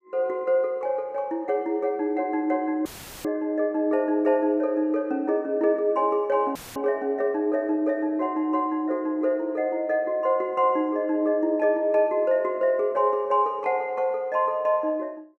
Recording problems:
dropout; at 3 s and at 6.5 s; filled with static

